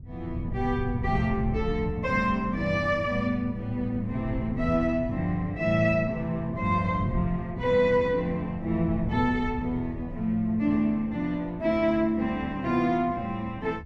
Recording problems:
wind on the microphone; below 130 Hz, SNR 11 dB

